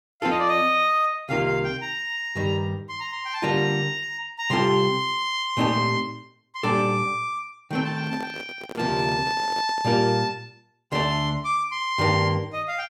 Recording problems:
handling noise; from 8 to 10 s; peak -9 dB vs average level

